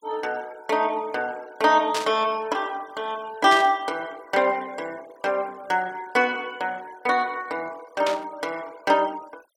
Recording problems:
denoising artefacts; signal-to-artefact ratio 23 dB
static burst; at 2 s, at 3.5 s and at 8 s; peak 0 dB vs average level

